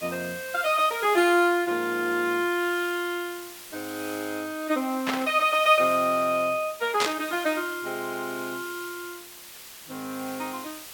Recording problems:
background hiss; slope +1 dB per octave, SNR 15 dB
burst of static; at 5 s and at 7 s; peak +3 dB vs average level

